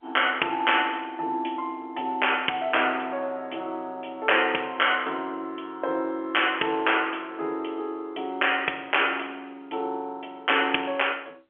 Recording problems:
telephone audio; 260 Hz to 3.3 kHz, G.711

